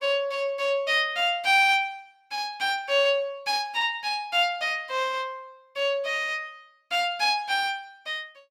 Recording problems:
none

